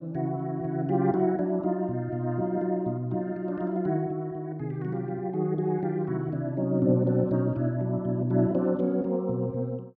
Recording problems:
none

